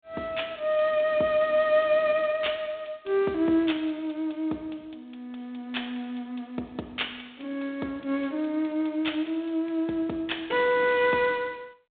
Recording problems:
phone line; 220 Hz to 3.7 kHz, G.726

